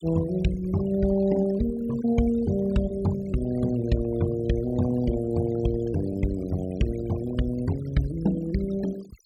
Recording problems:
denoising artefacts; signal-to-artefact ratio 17 dB

